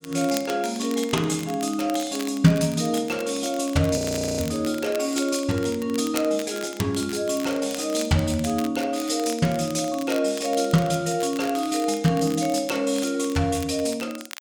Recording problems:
crackling; vinyl, SNR 15 dB
audio freezing; at 4 s

